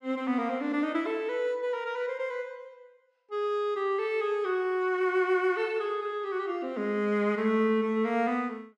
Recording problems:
none

